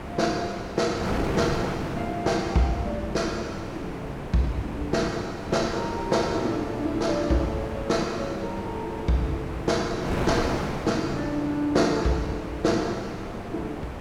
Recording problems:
wind noise; below 880 Hz, SNR 6 dB

